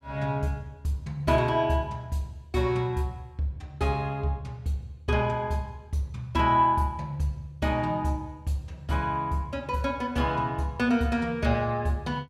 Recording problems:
none

